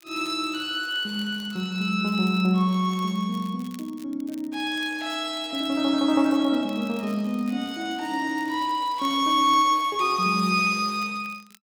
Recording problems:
crackling; vinyl, SNR 26 dB

